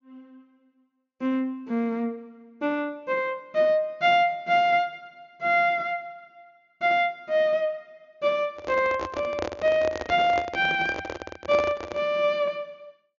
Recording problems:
low-pass filter; nothing above 6.8 kHz
handling noise; from 8.5 to 12 s; peak -1 dB vs average level

